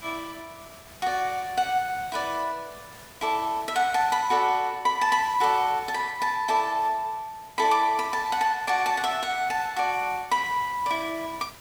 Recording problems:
hiss; slope -2 dB per octave, SNR 21 dB

